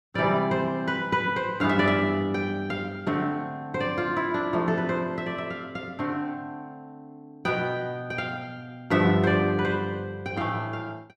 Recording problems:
none

